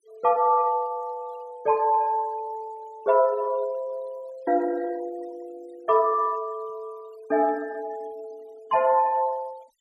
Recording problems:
noise reduction artefacts; signal-to-artefact ratio 28 dB

